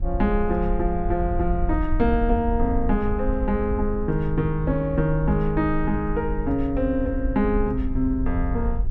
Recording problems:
wind on the microphone; below 64 Hz, SNR 5 dB

